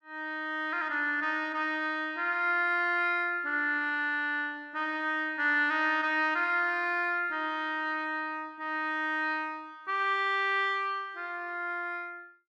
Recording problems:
none

